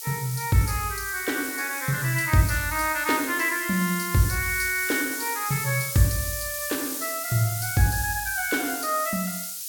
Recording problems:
background hiss; slope +10 dB per octave, SNR 5 dB

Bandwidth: 17.5 kHz